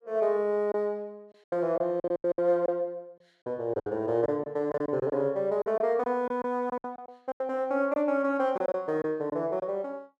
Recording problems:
lost packets; 11% of the sound replaced, filled with silence

